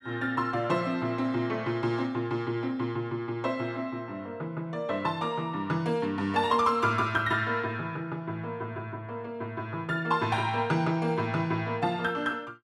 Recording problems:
none

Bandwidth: 14 kHz